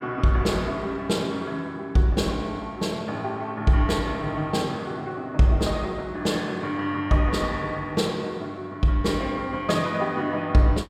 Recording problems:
none

